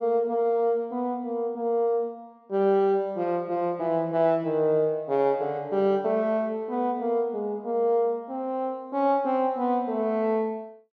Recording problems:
none

